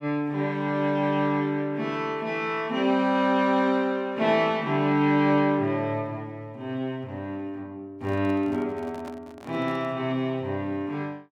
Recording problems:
microphone handling noise; from 8 to 10 s; peak -11 dB vs average level

